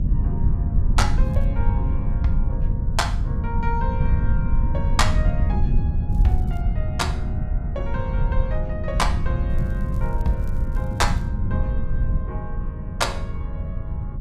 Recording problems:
hum; 60 Hz, harmonics up to 600 Hz, SNR 19 dB
rumble; below 96 Hz, SNR -5 dB
crackle; at 1.5 s, at 6 s and from 9.5 to 11 s; loose cable, SNR 28 dB

